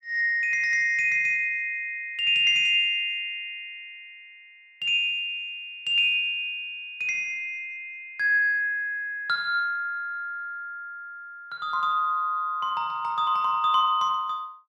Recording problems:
none

